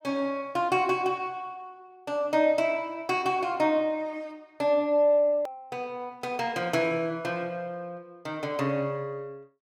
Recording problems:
hard cut with a click; at 5.5 s

